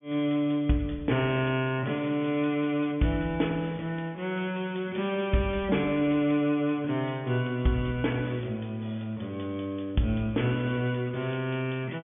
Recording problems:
treble cut off; nothing above 3.4 kHz

